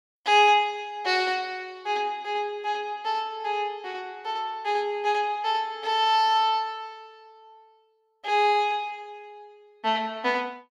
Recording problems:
none

